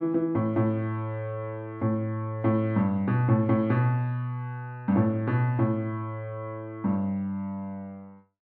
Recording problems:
none

